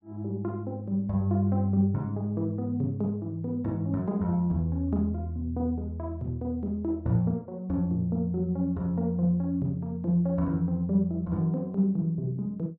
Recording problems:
none

